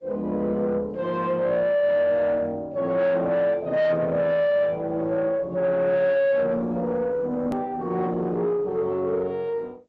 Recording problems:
low-pass filter; nothing above 7.9 kHz
lossy compression; Opus, then AAC, log-spectral distance 2 dB
distorted audio; soft clipping, signal-to-distortion ratio 10 dB
edit click; at 7.5 s

